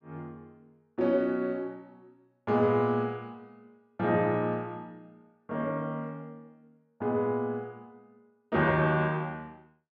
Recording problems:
none

